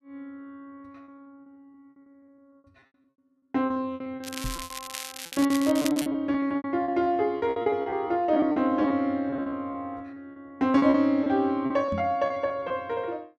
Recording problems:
lost packets; 17% of the sound replaced, filled with repeated pitch periods
crackling; from 4 to 6 s; loose cable, SNR 10 dB
microphone thump; at 4.5 s and at 12 s; peak -3 dB vs average level

